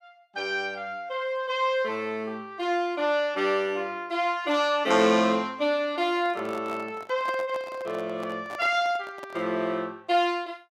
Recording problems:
microphone handling noise; from 6 to 9.5 s; peak -7 dB vs average level

